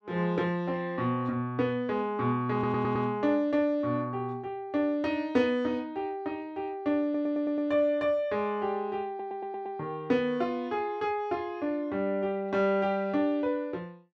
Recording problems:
stutter; at 2.5 s, at 7 s and at 9 s

